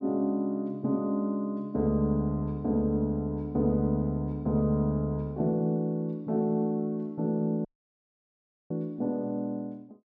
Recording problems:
audio cutting out; at 7.5 s for 1 s

